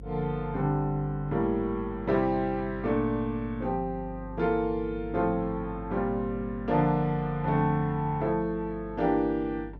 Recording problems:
hum; 50 Hz, harmonics up to 550 Hz, SNR 15 dB

